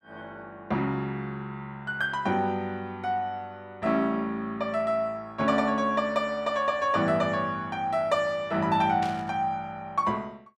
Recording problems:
static burst; at 9 s; peak -7 dB vs average level

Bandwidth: 14 kHz